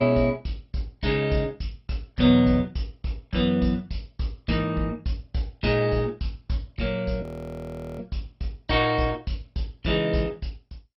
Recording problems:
lossy codec; MP2, log-spectral distance 3 dB, nothing above 5.3 kHz
frozen audio; at 7 s for 1 s

